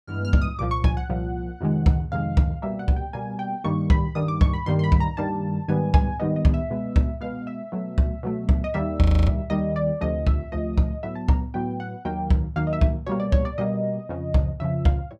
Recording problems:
audio freezing; at 9 s

